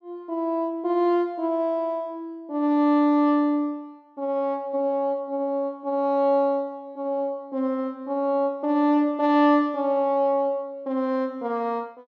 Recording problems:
none

